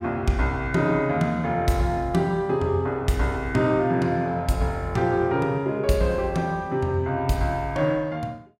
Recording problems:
none

